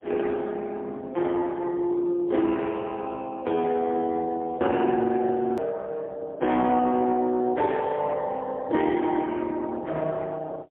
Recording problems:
telephone audio; 260 Hz to 3.4 kHz, AMR-NB, then MP3
hard cut with a click; at 5.5 s

